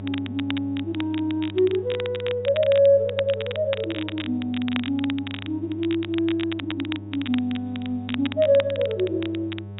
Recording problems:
low-pass filter; nothing above 4 kHz
hum; 50 Hz, harmonics up to 900 Hz, SNR 14 dB
crackle; vinyl, SNR 12 dB

